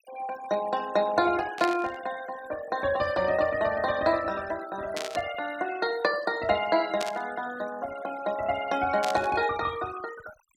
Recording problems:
denoising artefacts; signal-to-artefact ratio 17 dB
static burst; 4 times, first at 1.5 s; peak -1 dB vs average level

